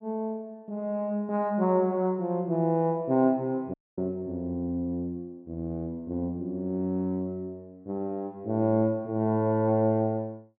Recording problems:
audio cutting out; at 3.5 s

